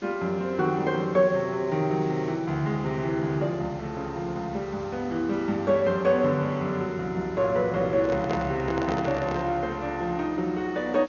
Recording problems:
lossy codec; MP2, log-spectral distance 2 dB, nothing above 6.7 kHz
background hiss; slope -3 dB per octave, SNR 24 dB
handling noise; from 8 to 9.5 s; peak -1 dB vs average level

